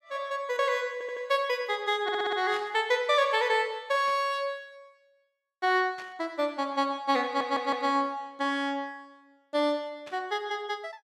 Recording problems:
audio stuttering; at 1 s, at 2 s and at 7.5 s
burst of static; 4 times, first at 2.5 s; peak -13 dB vs average level

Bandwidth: 15 kHz